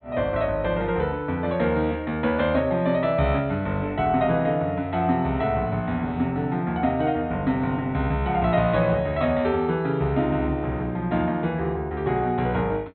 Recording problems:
treble cut off; nothing above 4.2 kHz

